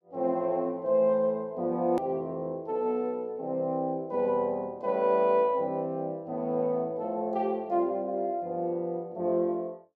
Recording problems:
edit click; at 2 s

